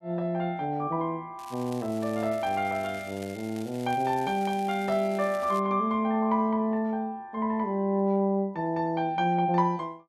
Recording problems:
crackle; from 1.5 to 5.5 s; loose cable, SNR 21 dB

